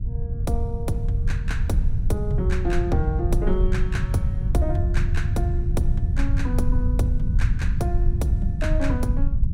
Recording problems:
rumble; below 90 Hz, SNR -5 dB

